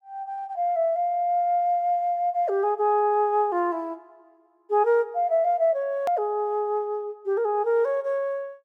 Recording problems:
hard cut with a click; at 6 s

